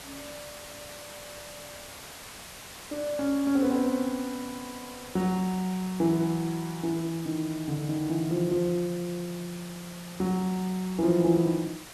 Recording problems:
hiss; slope -1 dB per octave, SNR 14 dB

